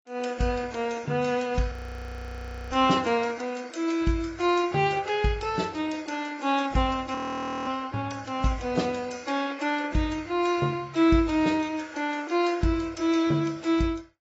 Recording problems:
lossy compression; AAC, log-spectral distance 3 dB, nothing above 7.1 kHz
audio freezing; at 1.5 s for 1 s and at 7 s for 0.5 s

